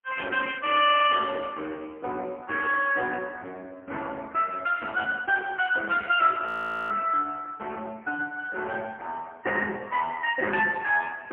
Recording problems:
phone line; 300 Hz to 2.9 kHz, AMR-NB, then MP3
frozen audio; at 6.5 s

